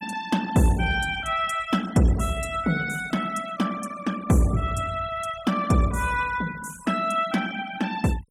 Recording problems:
denoising artefacts; signal-to-artefact ratio 17 dB

